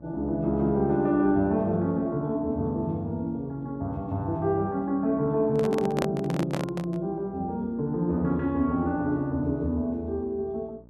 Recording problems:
mains hum; 60 Hz, harmonics up to 900 Hz, SNR 23 dB
microphone handling noise; from 5.5 to 7 s; peak +2 dB vs average level

